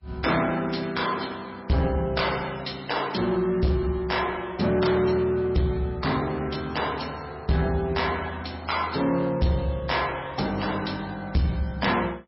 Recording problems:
lossy codec; MP3, log-spectral distance 5 dB, nothing above 5.5 kHz
distortion; soft clipping, signal-to-distortion ratio 11 dB

